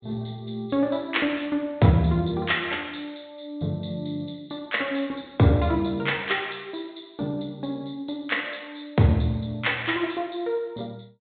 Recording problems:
treble missing; nothing above 4 kHz

